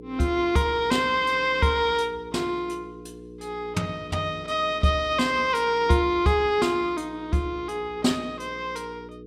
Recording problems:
electrical hum; 60 Hz, harmonics up to 480 Hz, SNR 18 dB

